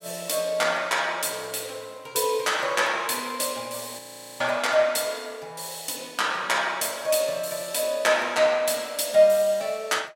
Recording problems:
audio freezing; at 4 s

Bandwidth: 16 kHz